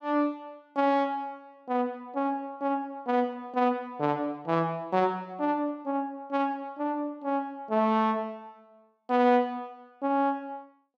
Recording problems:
none

